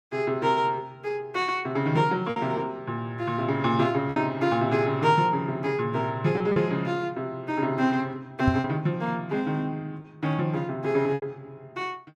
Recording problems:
lost packets; 3% of the sound replaced, filled with repeated pitch periods
knock on the microphone; at 8.5 s; peak +6 dB vs average level

